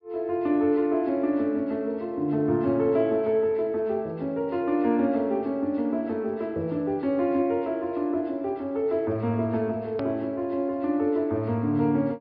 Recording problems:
treble missing; nothing above 5.5 kHz
edit click; at 10 s

